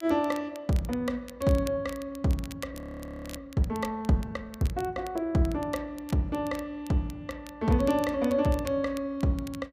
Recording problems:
crackle; vinyl, SNR 20 dB
frozen audio; at 3 s for 0.5 s

